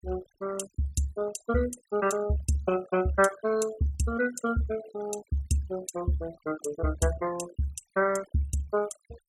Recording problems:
noise reduction artefacts; signal-to-artefact ratio 17 dB

